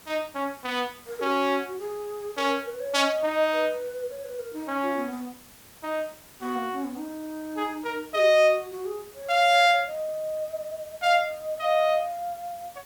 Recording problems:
background hiss; slope -2 dB per octave, SNR 22 dB

